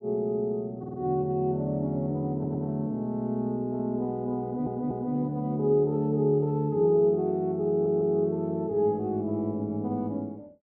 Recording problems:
stutter; 4 times, first at 1 s

